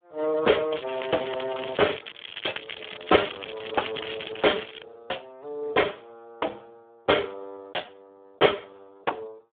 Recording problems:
telephone audio; 320 Hz to 3.4 kHz, Speex
crackle; from 0.5 to 5 s; loose cable, SNR 10 dB

